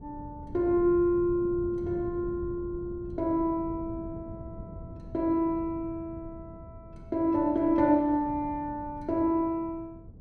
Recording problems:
wind noise; below 200 Hz, SNR 15 dB

